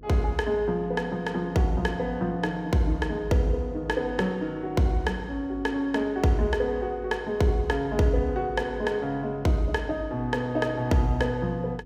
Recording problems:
hum; 50 Hz, harmonics up to 500 Hz, SNR 21 dB

